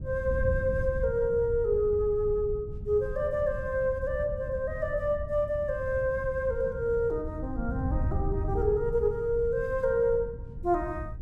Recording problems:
wind on the microphone; below 110 Hz, SNR 8 dB

